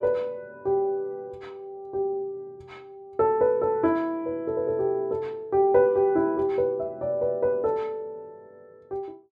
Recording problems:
none

